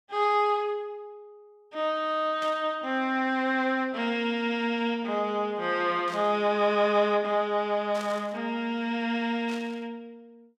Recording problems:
burst of static; 4 times, first at 2.5 s; peak -11 dB vs average level

